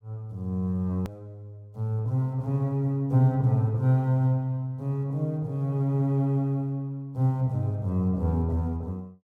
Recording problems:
hard cut with a click; at 1 s

